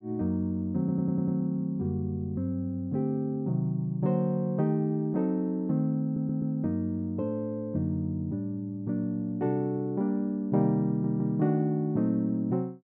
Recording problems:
audio stuttering; at 1 s, at 6 s and at 11 s

